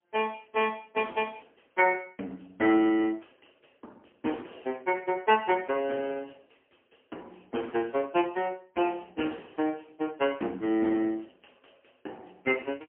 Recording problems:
telephone audio; 240 Hz to 3.2 kHz, AMR-NB, then MP3

